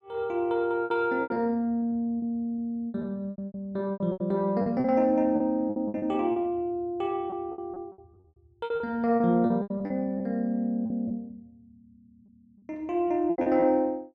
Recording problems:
lost packets; 14% of the sound replaced, filled with repeated pitch periods

